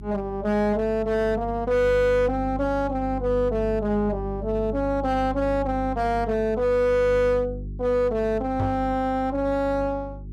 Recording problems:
distortion; hard clipping, uneven, signal-to-distortion ratio 10 dB
hum; 50 Hz, harmonics up to 400 Hz, SNR 12 dB
knock on the microphone; at 8.5 s; peak -1 dB vs average level

